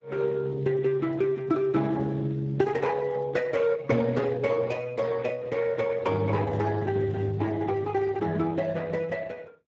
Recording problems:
codec artefacts; Opus, then Speex, log-spectral distance 3 dB

